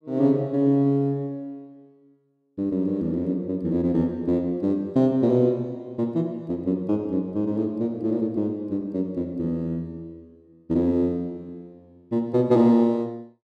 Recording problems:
none

